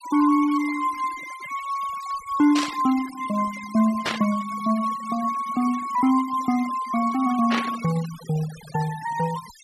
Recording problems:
denoising artefacts; signal-to-artefact ratio 16 dB
static burst; at 2.5 s, at 4 s and at 7.5 s; peak +2 dB vs average level

